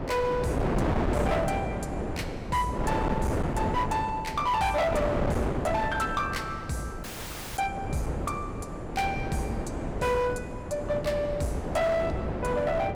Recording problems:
distortion; hard clipping, signal-to-distortion ratio 11 dB
wind noise; below 600 Hz, SNR 2 dB
dropout; at 7 s for 0.5 s

